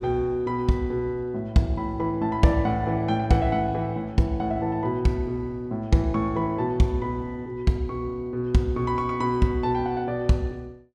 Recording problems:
none

